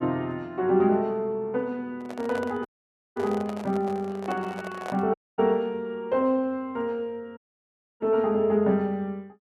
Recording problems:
microphone handling noise; from 2 to 5 s; peak -4 dB vs average level
dropout; at 2.5 s for 0.5 s, at 5 s and at 7.5 s for 0.5 s

